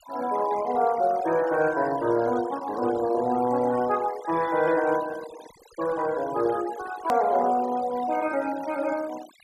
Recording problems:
denoising artefacts; signal-to-artefact ratio 17 dB
edit click; at 7 s

